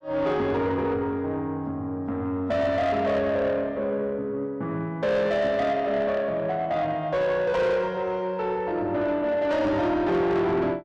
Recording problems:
distorted audio; soft clipping, signal-to-distortion ratio 10 dB

